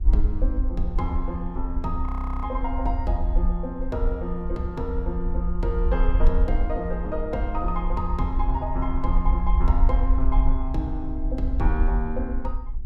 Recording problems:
hum; 60 Hz, harmonics up to 720 Hz, SNR 21 dB
rumble; below 52 Hz, SNR -3 dB
audio freezing; at 2 s

